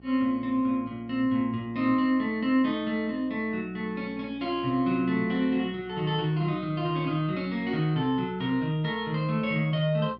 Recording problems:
electrical hum; 60 Hz, harmonics up to 1.2 kHz, SNR 24 dB

